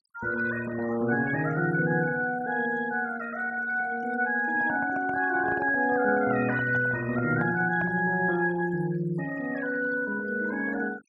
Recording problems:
denoising artefacts; signal-to-artefact ratio 18 dB
microphone handling noise; from 4.5 to 8 s; peak -6 dB vs average level

